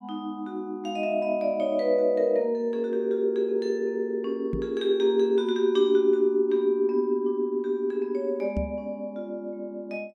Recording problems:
knock on the microphone; at 4.5 s and at 8.5 s; peak -1 dB vs average level

